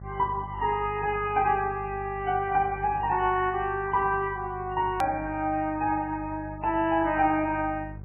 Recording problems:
lossy compression; MP3, log-spectral distance 3 dB, nothing above 13.1 kHz
hum; 50 Hz, harmonics up to 600 Hz, SNR 15 dB
hard cut with a click; at 5 s

